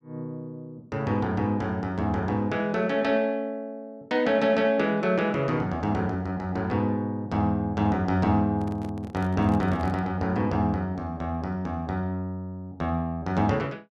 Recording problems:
handling noise; from 8.5 to 10 s; peak -10 dB vs average level

